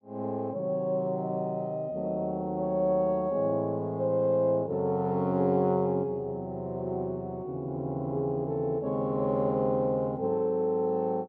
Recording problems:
none

